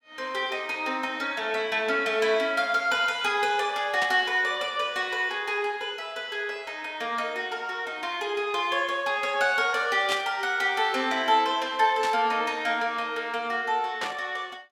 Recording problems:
static burst; 4 times, first at 4 s; peak -1 dB vs average level

